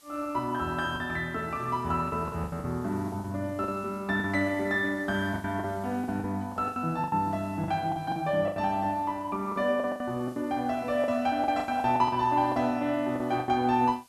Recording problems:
hiss; slope +1 dB per octave, SNR 27 dB
lost packets; 12% of the sound replaced, filled with the last packet

